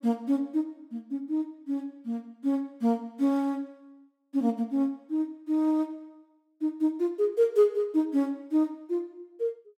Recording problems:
none

